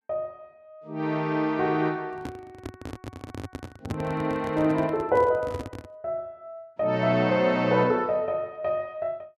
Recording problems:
microphone handling noise; from 2 to 6 s; peak -2 dB vs average level

